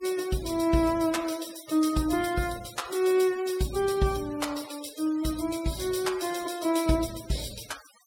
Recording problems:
noise reduction artefacts; signal-to-artefact ratio 16 dB

